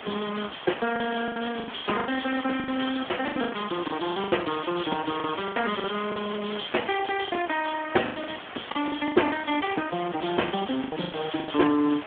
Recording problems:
telephone audio; 220 Hz to 3.2 kHz, Speex
background hiss; SNR 11 dB
packet loss; 13% of the sound replaced, filled with the last packet

